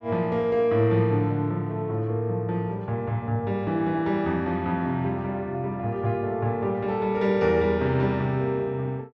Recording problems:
none

